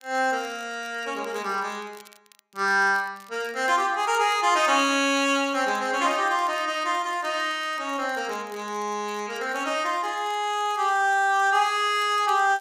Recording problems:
crackle; vinyl, SNR 27 dB

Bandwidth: 15.5 kHz